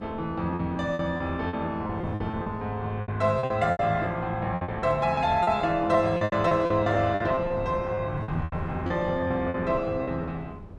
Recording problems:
wind noise; below 270 Hz, SNR 16 dB
lost packets; 14% of the sound replaced, filled with repeated pitch periods

